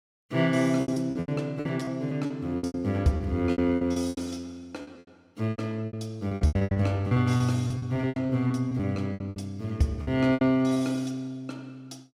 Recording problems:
lost packets; 18% of the sound replaced, filled with repeated pitch periods

